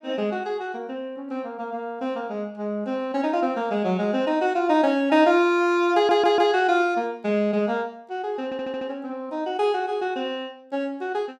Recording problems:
audio stuttering; at 6 s and at 8.5 s

